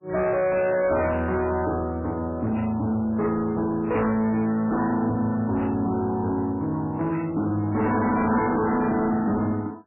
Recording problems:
codec artefacts; MP3, log-spectral distance 2 dB, nothing above 2.7 kHz
distortion; soft clipping, signal-to-distortion ratio 8 dB

